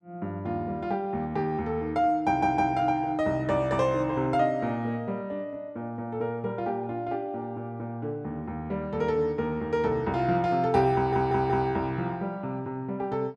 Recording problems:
stutter; at 2.5 s and at 11 s

